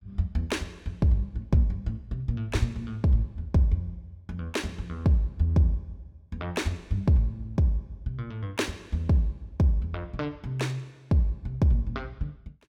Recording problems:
none

